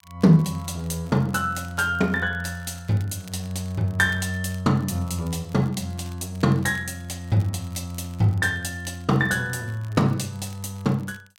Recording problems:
crackling; vinyl, SNR 27 dB

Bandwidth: 16.5 kHz